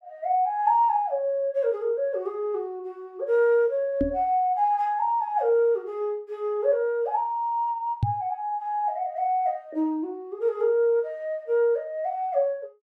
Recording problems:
microphone bump; at 4 s and at 8 s; peak +5 dB vs average level

